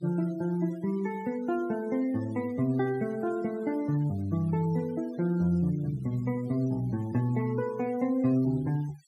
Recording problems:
denoising artefacts; signal-to-artefact ratio 23 dB

